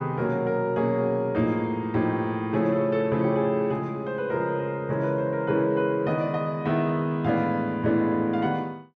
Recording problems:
none

